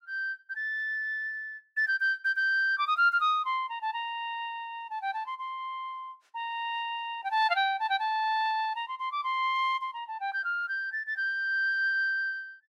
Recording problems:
none

